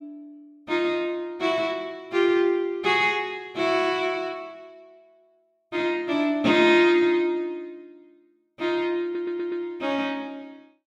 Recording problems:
audio stuttering; at 9 s

